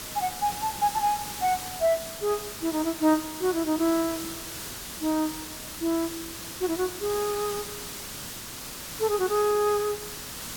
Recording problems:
hiss; slope -1 dB per octave, SNR 8 dB

